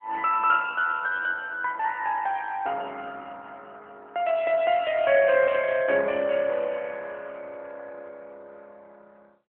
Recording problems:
telephone audio; 240 Hz to 3.2 kHz, AMR-NB

